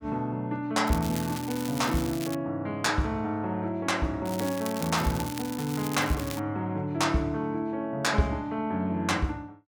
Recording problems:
crackle; from 1 to 2.5 s and from 4.5 to 6.5 s; loose cable, SNR 11 dB

